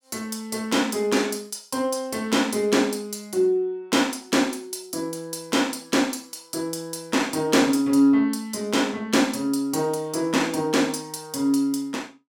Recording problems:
none

